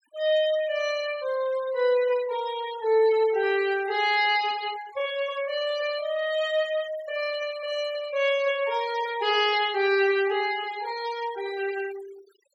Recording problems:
denoising artefacts; signal-to-artefact ratio 17 dB

